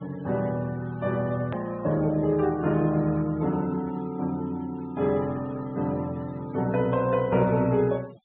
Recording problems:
treble missing; nothing above 4 kHz
noise reduction artefacts; signal-to-artefact ratio 24 dB
hard cut with a click; at 1.5 s

